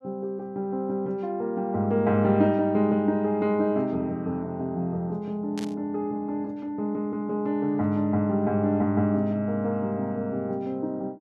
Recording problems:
burst of static; at 5.5 s; peak -8 dB vs average level

